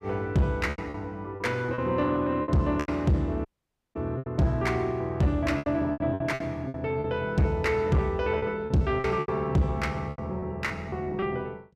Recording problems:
distortion; soft clipping, signal-to-distortion ratio 10 dB
packet loss; 11% of the sound replaced, filled with repeated pitch periods
dropout; at 3.5 s for 0.5 s

